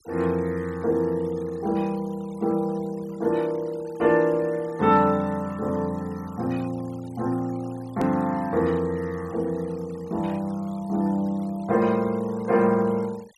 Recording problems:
noise reduction artefacts; signal-to-artefact ratio 25 dB
hard cut with a click; at 8 s

